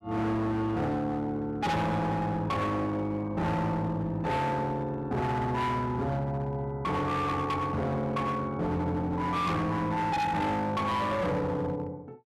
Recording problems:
distorted audio; hard clipping, uneven, signal-to-distortion ratio 7 dB

